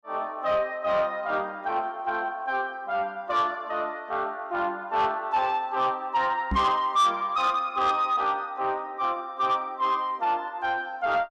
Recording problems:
distorted audio; soft clipping, signal-to-distortion ratio 11 dB
microphone thump; at 6.5 s; peak +1 dB vs average level

